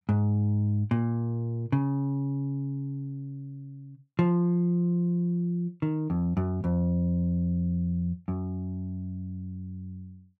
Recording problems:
none

